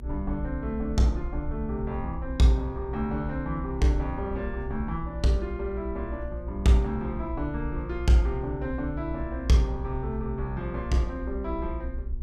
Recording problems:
electrical hum; 60 Hz, harmonics up to 960 Hz, SNR 18 dB
rumble; below 64 Hz, SNR 8 dB

